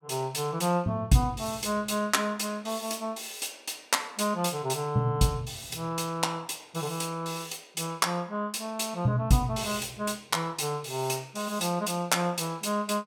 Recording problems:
none

